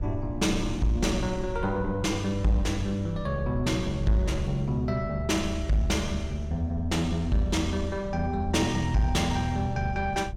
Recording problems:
distortion; soft clipping, signal-to-distortion ratio 12 dB
low-frequency rumble; below 88 Hz, SNR 12 dB

